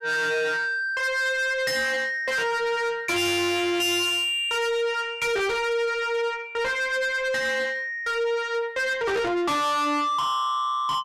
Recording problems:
distorted audio; soft clipping, signal-to-distortion ratio 7 dB

